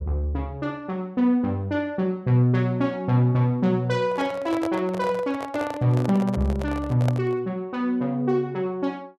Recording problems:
handling noise; from 4 to 7.5 s; peak -2 dB vs average level

